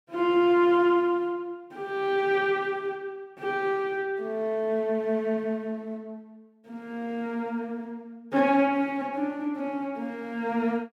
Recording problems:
none

